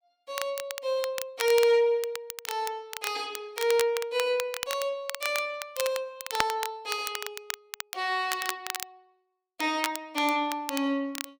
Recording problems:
crackling; vinyl, SNR 8 dB

